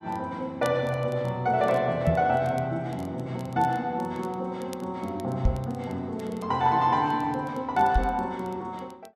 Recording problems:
crackling; vinyl, SNR 27 dB
knock on the microphone; at 2 s, at 5.5 s and at 8 s; peak +7 dB vs average level

